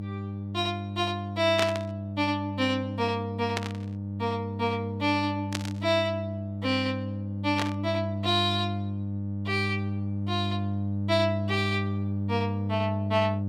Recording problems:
mains hum; 50 Hz, harmonics up to 600 Hz, SNR 3 dB
burst of static; 4 times, first at 1.5 s; peak +4 dB vs average level

